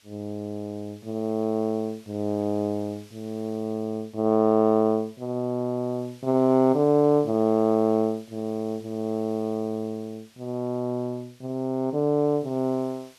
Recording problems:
hiss; slope +1 dB per octave, SNR 28 dB

